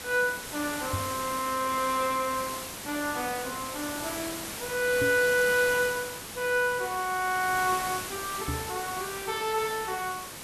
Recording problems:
background hiss; slope -2 dB per octave, SNR 7 dB
knock on the microphone; at 1 s, at 5 s and at 8.5 s; peak 0 dB vs average level

